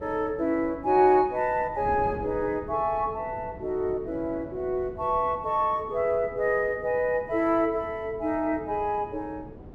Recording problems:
wind noise; below 380 Hz, SNR 17 dB

